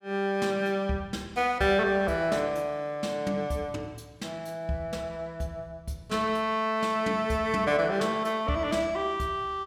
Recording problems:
none

